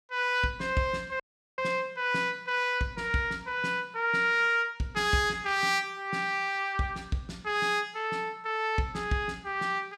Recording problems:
audio cutting out; at 1 s

